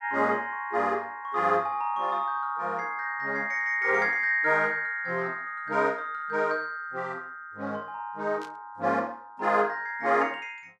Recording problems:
burst of static; at 8.5 s; peak -15 dB vs average level

